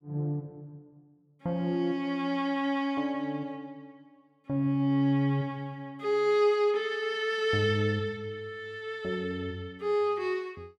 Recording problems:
none

